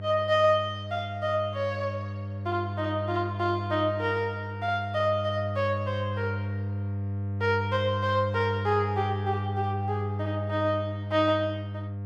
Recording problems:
electrical hum; 50 Hz, harmonics up to 700 Hz, SNR 5 dB

